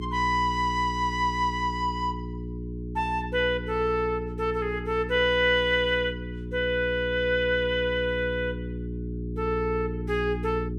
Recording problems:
hum; 60 Hz, harmonics up to 420 Hz, SNR 8 dB

